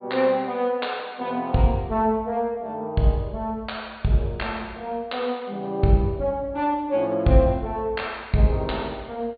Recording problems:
treble cut off; nothing above 4.6 kHz

